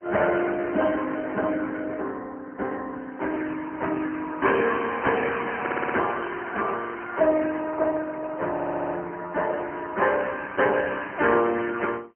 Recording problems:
phone line; 260 Hz to 3.1 kHz, AMR-NB
stutter; at 5.5 s and at 8.5 s

